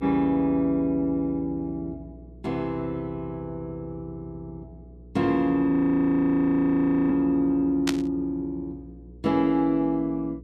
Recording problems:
electrical hum; 60 Hz, harmonics up to 480 Hz, SNR 22 dB
audio freezing; at 5.5 s for 1.5 s
static burst; at 8 s; peak +2 dB vs average level

